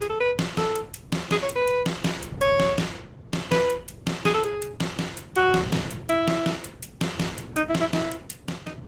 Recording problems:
lossy compression; Opus, log-spectral distance 4 dB, nothing above 18 kHz
wind on the microphone; below 260 Hz, SNR 15 dB

